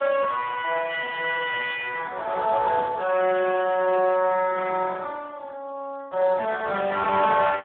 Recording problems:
telephone audio; 240 Hz to 3.4 kHz, Speex

